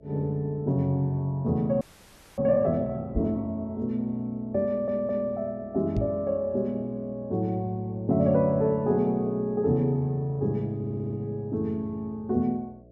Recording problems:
mains hum; 60 Hz, harmonics up to 660 Hz, SNR 27 dB
audio freezing; at 2 s for 0.5 s
knock on the microphone; at 3 s and at 6 s; peak +2 dB vs average level
audio stuttering; at 4.5 s and at 11 s

